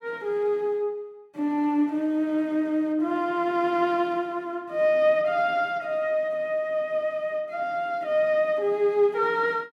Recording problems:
none

